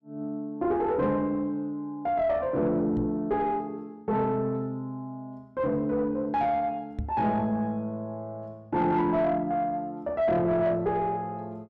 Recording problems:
distorted audio; soft clipping, signal-to-distortion ratio 11 dB
microphone bump; at 3 s and at 7 s; peak -1 dB vs average level

